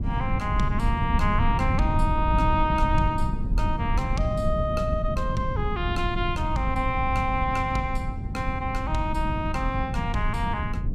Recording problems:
rumble; below 130 Hz, SNR 1 dB

